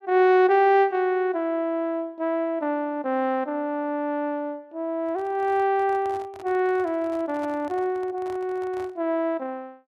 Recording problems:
handling noise; from 5 to 9 s; peak -12 dB vs average level

